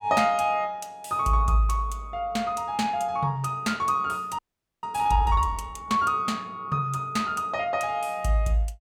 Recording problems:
audio freezing; at 4.5 s

